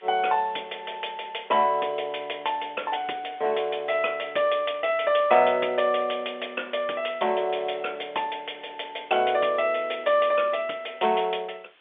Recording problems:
telephone audio; 300 Hz to 3.5 kHz, G.711
hiss; SNR 28 dB

